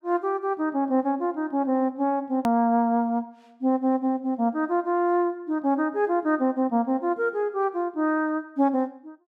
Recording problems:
click at an edit; at 2.5 s

